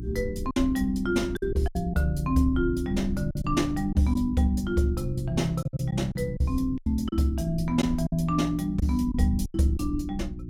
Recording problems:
hum; 60 Hz, harmonics up to 360 Hz, SNR 11 dB
rumble; below 92 Hz, SNR 12 dB
lost packets; 7% of the sound replaced, filled with silence

